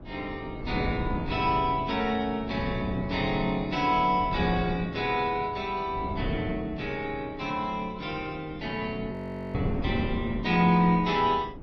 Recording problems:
codec artefacts; AAC, log-spectral distance 2 dB
wind noise; below 280 Hz, SNR 8 dB
frozen audio; at 9 s

